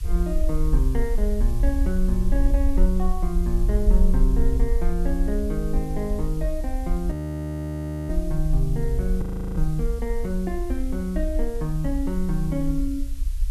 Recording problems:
background hiss; slope +3 dB per octave, SNR 20 dB
low-frequency rumble; below 50 Hz, SNR -1 dB
audio freezing; at 7 s for 1 s and at 9 s

